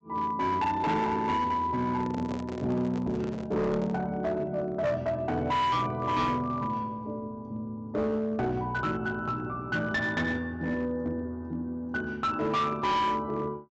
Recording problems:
treble cut off; nothing above 8 kHz
distortion; hard clipping, uneven, signal-to-distortion ratio 10 dB
handling noise; from 2 to 4 s; peak -5 dB vs average level

